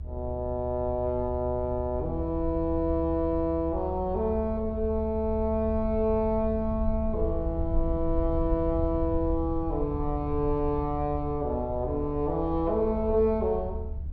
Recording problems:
low-frequency rumble; below 74 Hz, SNR 7 dB

